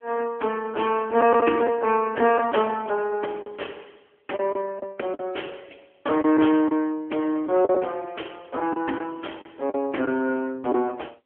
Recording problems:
telephone audio; 240 Hz to 3.2 kHz, AMR-NB
packet loss; 6% of the sound replaced, filled with the last packet

